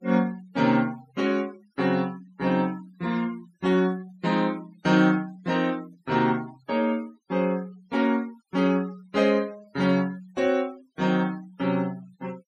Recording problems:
denoising artefacts; signal-to-artefact ratio 22 dB

